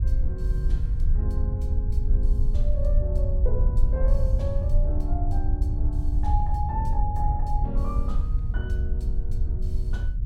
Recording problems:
low-frequency rumble; below 66 Hz, SNR -9 dB

